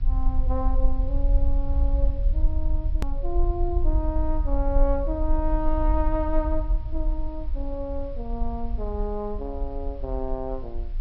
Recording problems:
treble missing; nothing above 5.6 kHz
background hiss; SNR 28 dB
rumble; below 50 Hz, SNR -4 dB
hard cut with a click; at 3 s

